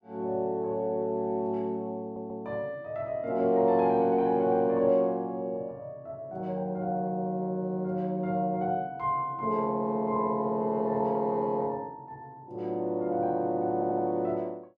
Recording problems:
audio stuttering; at 2 s and at 14 s

